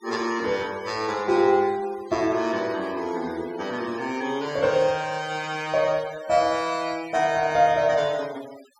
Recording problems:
noise reduction artefacts; signal-to-artefact ratio 20 dB

